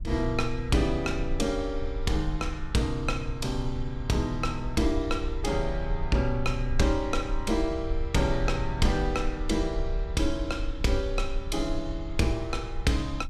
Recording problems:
low-frequency rumble; below 52 Hz, SNR 6 dB

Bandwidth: 14.5 kHz